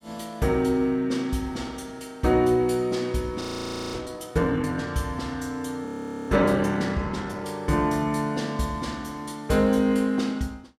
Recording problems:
frozen audio; at 3.5 s for 0.5 s and at 6 s

